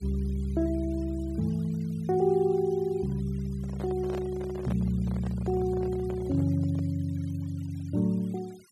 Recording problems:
noise reduction artefacts; signal-to-artefact ratio 26 dB
handling noise; from 3.5 to 7 s; peak -6 dB vs average level

